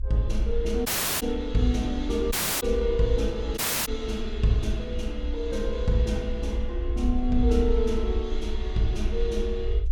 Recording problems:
low-frequency rumble; below 58 Hz, strongest tone 22 Hz, SNR 4 dB
dropout; at 1 s, at 2.5 s and at 3.5 s

